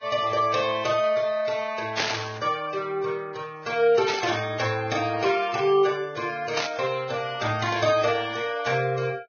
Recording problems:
codec artefacts; Vorbis, log-spectral distance 4 dB, nothing above 6.3 kHz
burst of static; at 2 s, at 4 s and at 6.5 s; peak +4 dB vs average level

